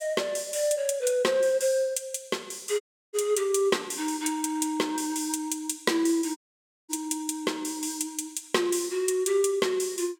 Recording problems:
dropout; at 3 s and at 6.5 s for 0.5 s

